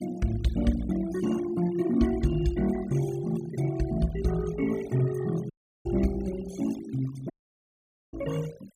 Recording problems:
denoising artefacts; signal-to-artefact ratio 18 dB
dropout; at 5.5 s and at 7.5 s for 1 s

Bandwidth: 15.5 kHz